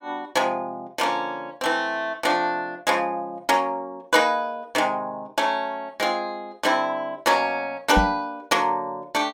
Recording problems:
microphone bump; at 8 s; peak +4 dB vs average level

